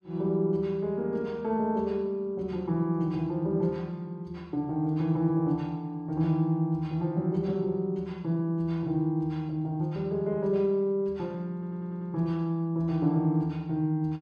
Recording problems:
audio stuttering; at 12 s

